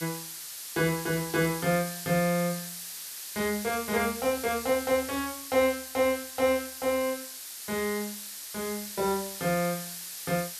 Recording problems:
background hiss; slope +3 dB per octave, SNR 8 dB

